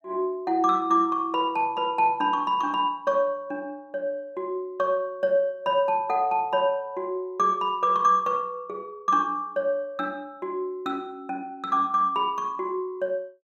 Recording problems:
none

